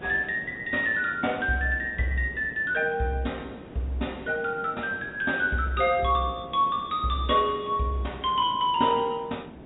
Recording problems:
treble missing; nothing above 4 kHz
background hiss; SNR 17 dB

